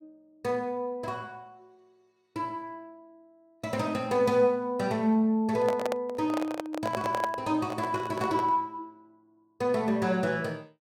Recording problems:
handling noise; from 5.5 to 8.5 s; peak +1 dB vs average level

